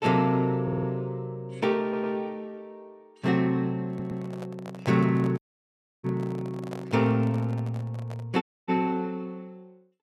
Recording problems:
stutter; at 0.5 s, at 2 s and at 4 s
microphone handling noise; from 4 to 8.5 s; peak -7 dB vs average level
audio cutting out; at 5.5 s for 0.5 s and at 8.5 s

